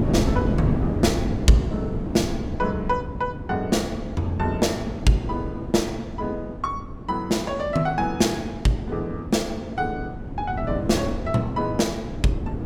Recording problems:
wind on the microphone; below 280 Hz, SNR 5 dB

